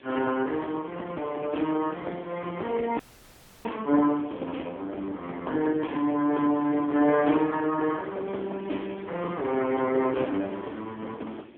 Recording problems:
phone line; 240 Hz to 3.4 kHz, AMR-NB
background hiss; SNR 28 dB
wind on the microphone; below 480 Hz, SNR 21 dB
frozen audio; at 3 s for 0.5 s

